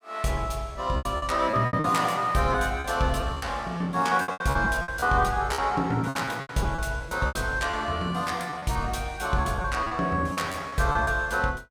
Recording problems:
packet loss; 13% of the sound replaced, filled with repeated pitch periods

